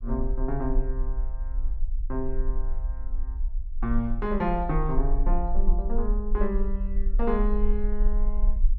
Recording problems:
rumble; below 38 Hz, strongest tone 22 Hz, SNR -1 dB

